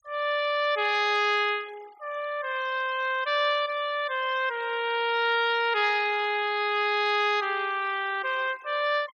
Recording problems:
denoising artefacts; signal-to-artefact ratio 21 dB

